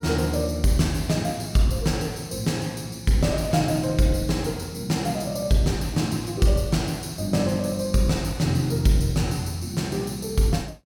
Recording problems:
none

